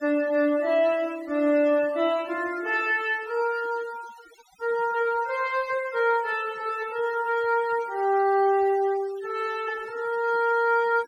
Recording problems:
noise reduction artefacts; signal-to-artefact ratio 21 dB

